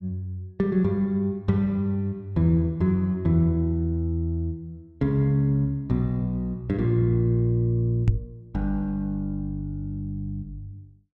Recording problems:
knock on the microphone; at 8 s; peak +8 dB vs average level

